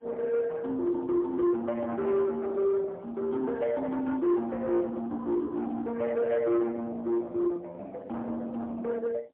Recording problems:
telephone audio; 880 Hz to 2 kHz, AMR-NB, then MP3
distorted audio; soft clipping, signal-to-distortion ratio 12 dB

